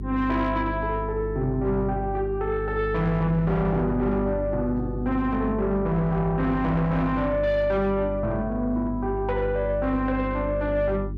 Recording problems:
distorted audio; soft clipping, signal-to-distortion ratio 11 dB
hum; 50 Hz, harmonics up to 400 Hz, SNR 8 dB

